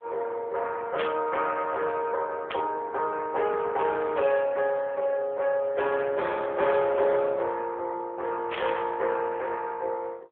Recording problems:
telephone audio; 340 Hz to 3.4 kHz, AMR-NB
burst of static; at 1 s, at 2.5 s and at 8.5 s; peak -1 dB vs average level

